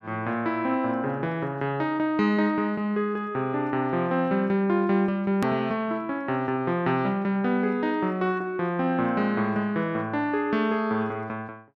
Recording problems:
click at an edit; at 5.5 s

